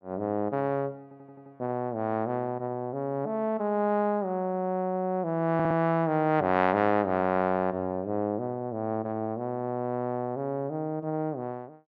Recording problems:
stutter; at 1 s and at 5.5 s

